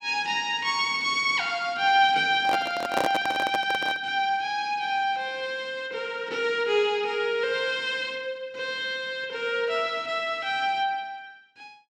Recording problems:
handling noise; from 2.5 to 4 s; peak +3 dB vs average level

